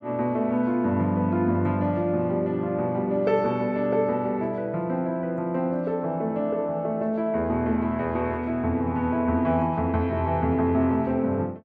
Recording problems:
none

